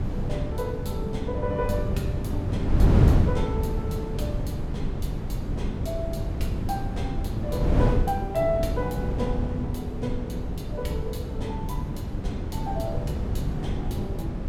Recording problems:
wind on the microphone; below 180 Hz, SNR -4 dB

